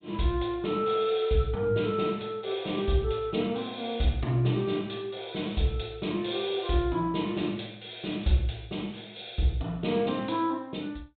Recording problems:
treble cut off; nothing above 4 kHz

